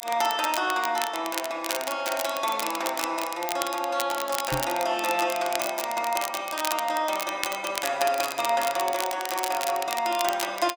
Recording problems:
crackling; vinyl, SNR 6 dB
knock on the microphone; at 4.5 s; peak -2 dB vs average level

